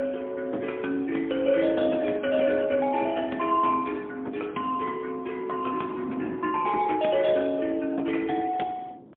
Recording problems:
phone line; 220 Hz to 3.5 kHz, AMR-NB, then MP3
wind noise; below 400 Hz, SNR 18 dB

